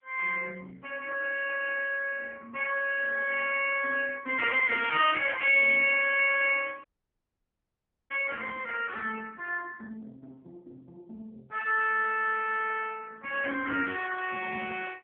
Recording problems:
phone line; 260 Hz to 3.3 kHz, AMR-NB
dropout; at 7 s for 1.5 s

